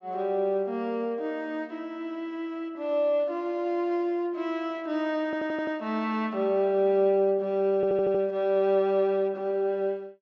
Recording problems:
treble cut off; nothing above 8 kHz
stutter; at 5.5 s and at 8 s

